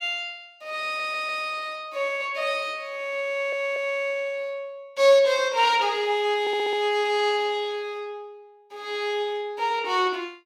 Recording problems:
audio stuttering; at 1 s, at 3.5 s and at 6.5 s

